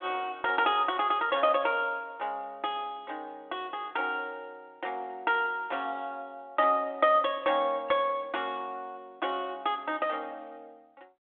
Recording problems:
phone line; 220 Hz to 3.6 kHz, G.726

